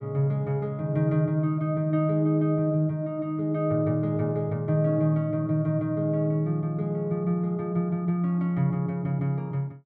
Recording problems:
none

